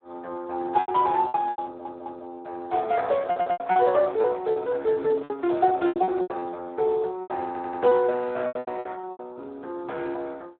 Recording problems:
phone line; 300 Hz to 3.9 kHz, Speex
lost packets; 12% of the sound replaced, filled with repeated pitch periods
stutter; at 1.5 s, at 3.5 s and at 7.5 s
microphone handling noise; from 3.5 to 6.5 s; peak -12 dB vs average level

